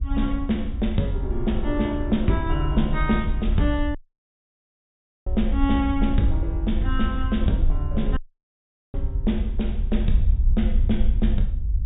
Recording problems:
low-pass filter; nothing above 4 kHz
rumble; below 60 Hz, SNR 1 dB
wind on the microphone; below 90 Hz, SNR 9 dB
dropout; at 4 s for 1.5 s and at 8 s for 1 s

